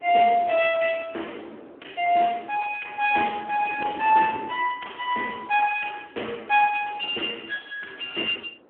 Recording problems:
telephone audio; 280 Hz to 3.2 kHz, Speex
wind noise; below 570 Hz, SNR 21 dB

